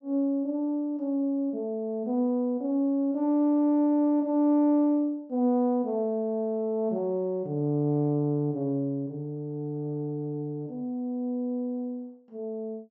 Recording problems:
treble cut off; nothing above 8 kHz

